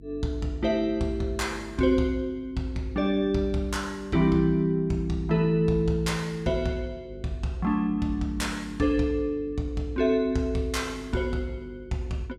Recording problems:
hum; 50 Hz, harmonics up to 450 Hz, SNR 19 dB

